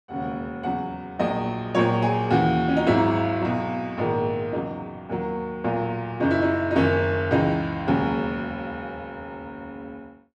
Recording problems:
none

